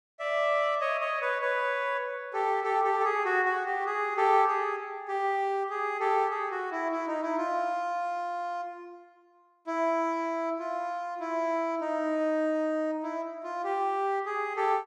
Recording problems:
none

